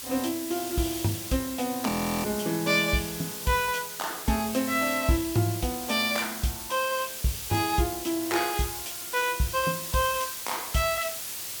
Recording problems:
hiss; slope +1 dB per octave, SNR 6 dB
audio freezing; at 2 s

